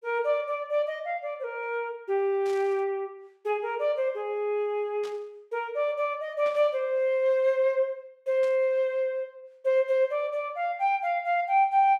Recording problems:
burst of static; 4 times, first at 2.5 s; peak -14 dB vs average level

